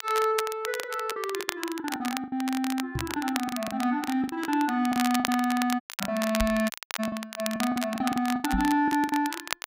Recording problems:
crackle; vinyl, SNR 8 dB
packet loss; 12% of the sound replaced, filled with the last packet
microphone bump; at 3 s, at 6.5 s and at 8.5 s; peak +2 dB vs average level
dropout; at 6 s and at 6.5 s

